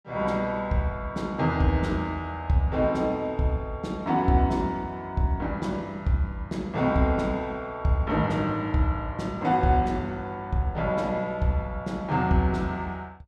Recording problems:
none

